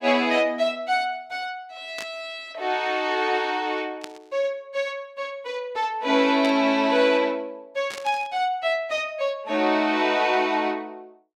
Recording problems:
static burst; 4 times, first at 2 s; peak -7 dB vs average level

